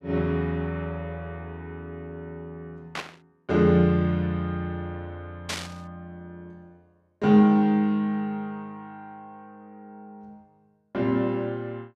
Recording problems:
static burst; at 3 s and at 5.5 s; peak -2 dB vs average level

